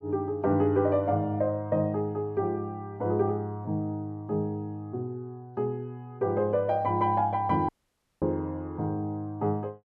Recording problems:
audio cutting out; at 7.5 s for 0.5 s

